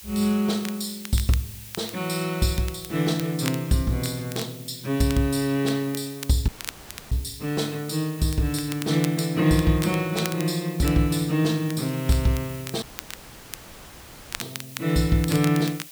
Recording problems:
hiss; SNR 17 dB
crackle; vinyl, SNR 14 dB
audio cutting out; at 6.5 s for 0.5 s and at 13 s for 1.5 s

